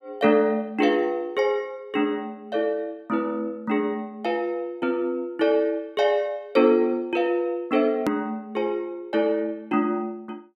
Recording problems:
edit click; at 8 s

